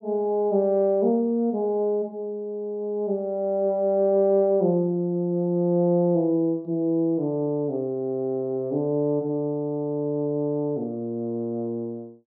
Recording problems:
none

